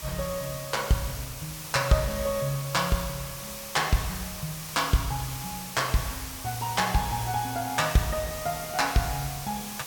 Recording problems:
background hiss; SNR 8 dB

